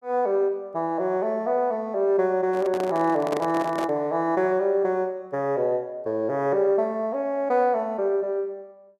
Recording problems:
handling noise; from 2.5 to 4 s; peak -2 dB vs average level

